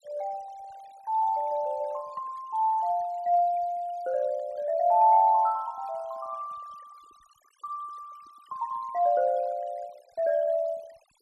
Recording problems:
noise reduction artefacts; signal-to-artefact ratio 27 dB

